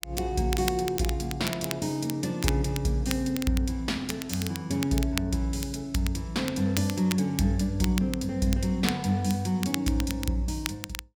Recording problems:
crackle; vinyl, SNR 10 dB

